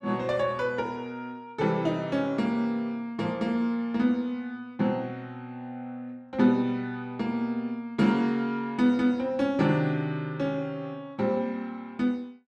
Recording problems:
none

